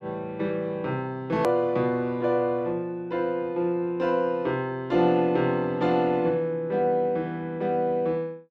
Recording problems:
hard cut with a click; at 1.5 s

